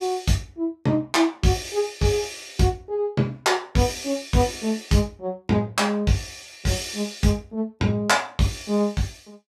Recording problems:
none

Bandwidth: 14.5 kHz